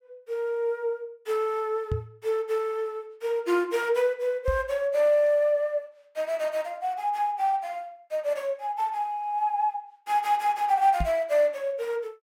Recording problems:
microphone bump; at 2 s, at 4.5 s and at 11 s; peak +1 dB vs average level

